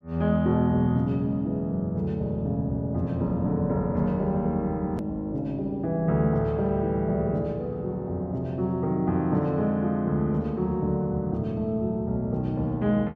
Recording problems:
hard cut with a click; at 5 s

